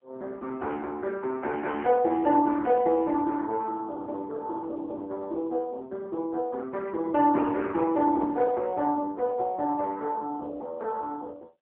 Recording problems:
phone line; 280 Hz to 2 kHz, AMR-NB

